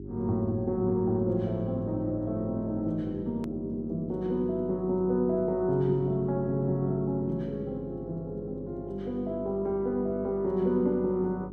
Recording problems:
hum; 50 Hz, harmonics up to 400 Hz, SNR 12 dB
hard cut with a click; at 3.5 s

